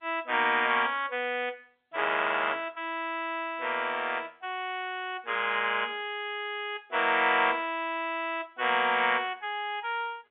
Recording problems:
telephone audio; 280 Hz to 3.6 kHz, G.711

